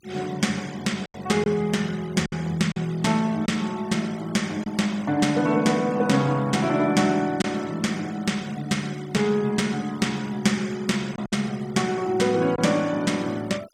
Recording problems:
noise reduction artefacts; signal-to-artefact ratio 21 dB
lost packets; 3% of the sound replaced, filled with silence

